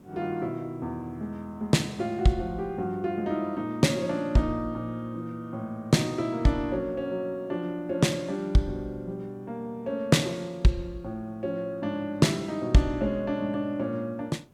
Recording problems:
background hiss; SNR 28 dB

